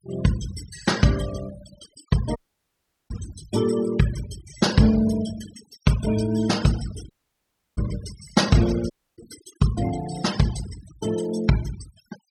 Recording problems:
noise reduction artefacts; signal-to-artefact ratio 14 dB
audio cutting out; at 2.5 s for 0.5 s, at 7 s for 0.5 s and at 9 s

